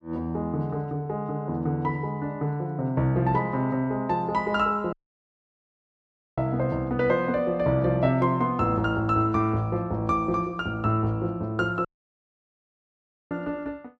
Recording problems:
dropout; at 5 s for 1.5 s and at 12 s for 1.5 s

